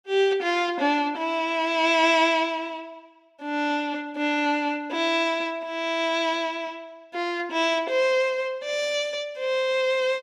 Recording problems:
none

